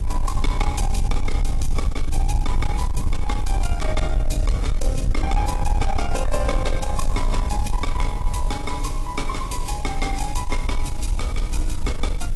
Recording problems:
lossy codec; AAC, log-spectral distance 2 dB, nothing above 11.6 kHz
distorted audio; soft clipping, signal-to-distortion ratio 11 dB
hiss; slope +2 dB per octave, SNR 18 dB
rumble; below 56 Hz, SNR -2 dB

